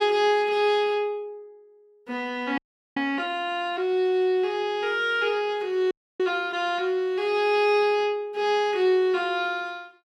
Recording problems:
audio freezing; at 2.5 s and at 6 s

